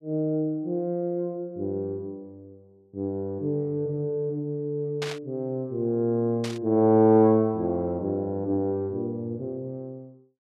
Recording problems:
static burst; at 5 s and at 6.5 s; peak -3 dB vs average level

